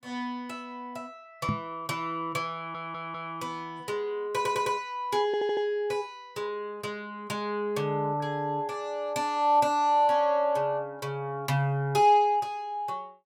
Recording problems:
microphone bump; at 1.5 s; peak +2 dB vs average level
audio stuttering; at 2.5 s, at 4.5 s and at 5.5 s

